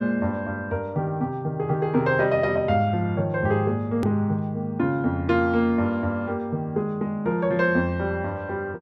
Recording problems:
click at an edit; at 4 s

